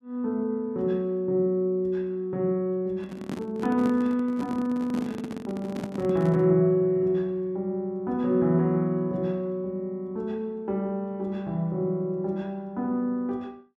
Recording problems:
handling noise; from 3 to 6.5 s; peak -2 dB vs average level

